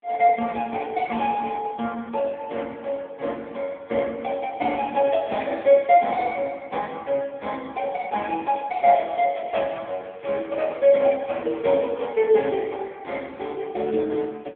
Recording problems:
phone line; 240 Hz to 3.3 kHz, AMR-NB
crackling; from 9 to 12 s; loose cable, SNR 29 dB

